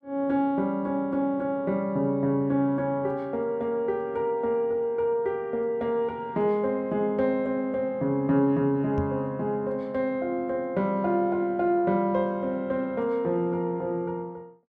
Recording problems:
knock on the microphone; at 9 s; peak -1 dB vs average level

